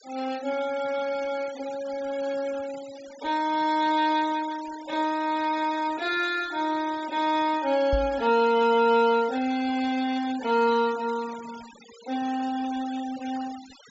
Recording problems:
treble cut off; nothing above 8 kHz
noise reduction artefacts; signal-to-artefact ratio 18 dB
microphone thump; at 8 s; peak +1 dB vs average level

